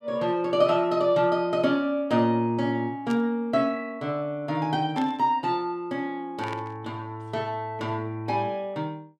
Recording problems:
static burst; at 3 s, at 5 s and at 6.5 s; peak -10 dB vs average level

